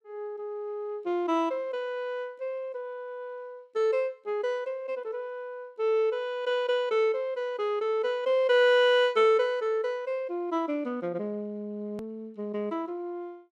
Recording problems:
click at an edit; at 12 s

